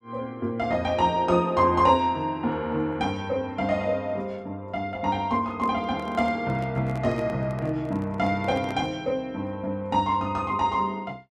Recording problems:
microphone handling noise; from 5.5 to 9 s; peak -8 dB vs average level

